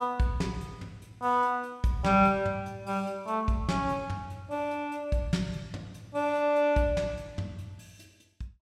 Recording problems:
none

